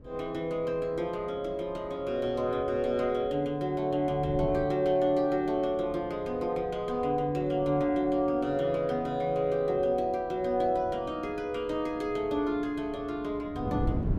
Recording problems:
wind on the microphone; below 250 Hz, SNR 15 dB

